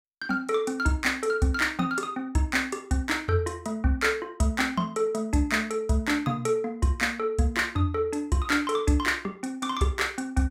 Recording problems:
none

